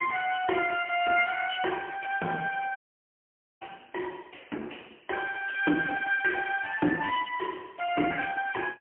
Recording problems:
phone line; 240 Hz to 3 kHz, AMR-NB, then MP3
audio cutting out; at 3 s for 1 s

